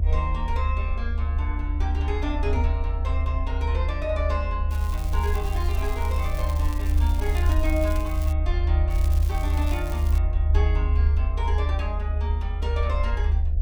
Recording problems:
electrical hum; 60 Hz, harmonics up to 720 Hz, SNR 15 dB
rumble; below 76 Hz, strongest tone 74 Hz, SNR -7 dB
microphone bump; at 2.5 s; peak +6 dB vs average level
crackling; from 4.5 to 8.5 s and from 9 to 10 s; loose cable, SNR 11 dB

